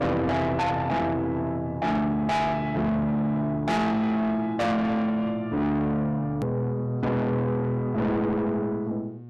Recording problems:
distorted audio; soft clipping, signal-to-distortion ratio 6 dB
mains hum; 60 Hz, harmonics up to 720 Hz, SNR 17 dB
click at an edit; at 6.5 s

